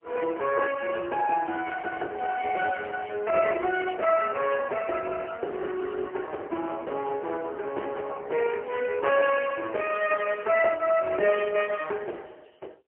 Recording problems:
phone line; 320 Hz to 2.8 kHz, AMR-NB, then MP3

